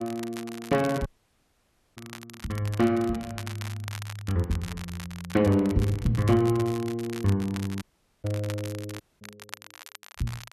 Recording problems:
crackling; vinyl, SNR 15 dB
dropout; at 1 s for 1 s, at 8 s and at 9 s

